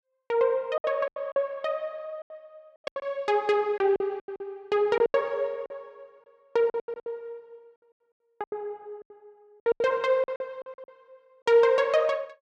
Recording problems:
packet loss; 15% of the sound replaced, filled with silence

